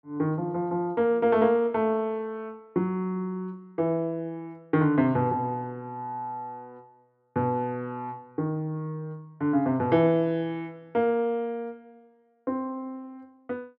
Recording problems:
none

